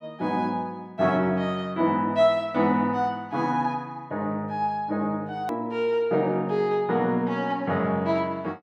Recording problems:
click at an edit; at 5.5 s

